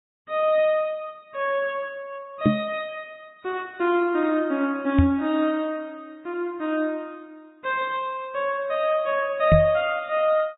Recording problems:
low-pass filter; nothing above 3.4 kHz
codec artefacts; Vorbis, log-spectral distance 2 dB
knock on the microphone; at 2.5 s, at 5 s and at 9.5 s; peak +9 dB vs average level

